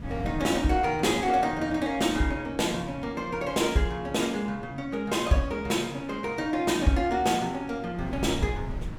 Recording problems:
wind noise; below 180 Hz, SNR 16 dB

